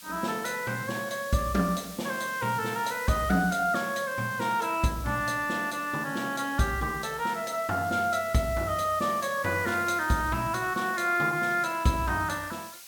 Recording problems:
hiss; slope +3 dB per octave, SNR 16 dB

